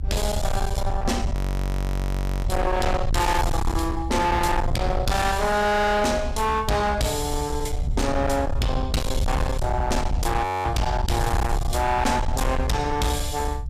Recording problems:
distorted audio; hard clipping, signal-to-distortion ratio 6 dB
low-frequency rumble; below 120 Hz, SNR 4 dB
audio freezing; at 1.5 s for 1 s and at 10 s

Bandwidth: 14.5 kHz